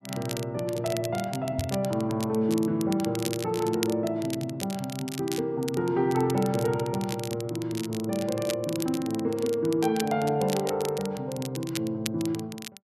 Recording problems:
crackling; vinyl, SNR 11 dB
microphone bump; at 1.5 s; peak 0 dB vs average level

